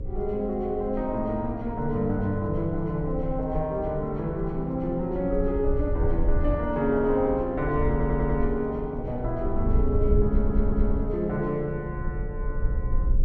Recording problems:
electrical hum; 60 Hz, harmonics up to 540 Hz, SNR 17 dB
rumble; below 66 Hz, SNR 5 dB
audio stuttering; at 8 s and at 10 s

